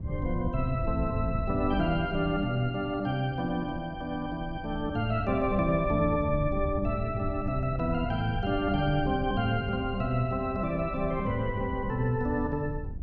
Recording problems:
wind on the microphone; below 100 Hz, SNR 8 dB

